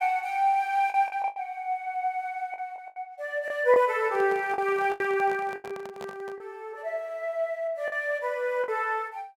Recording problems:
packet loss; 7% of the sound replaced, filled with the last packet
microphone handling noise; from 4 to 6.5 s; peak -10 dB vs average level

